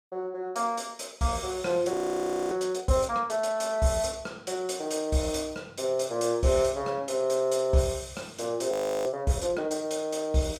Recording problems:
audio freezing; at 2 s for 0.5 s and at 8.5 s

